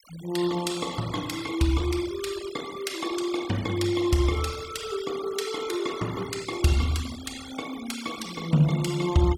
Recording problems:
noise reduction artefacts; signal-to-artefact ratio 14 dB

